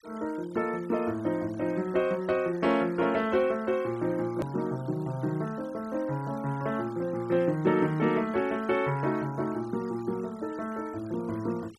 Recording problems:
noise reduction artefacts; signal-to-artefact ratio 23 dB
click at an edit; at 4.5 s

